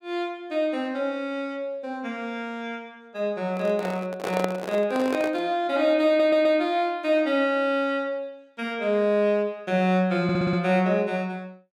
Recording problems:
handling noise; from 3.5 to 5.5 s; peak +1 dB vs average level
stutter; at 6 s and at 10 s

